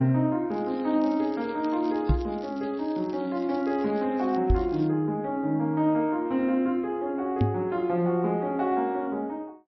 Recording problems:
codec artefacts; MP3, log-spectral distance 2 dB
crackle; from 0.5 to 4.5 s and at 4.5 s; loose cable, SNR 26 dB
knock on the microphone; at 2 s, at 4.5 s and at 7.5 s; peak +6 dB vs average level

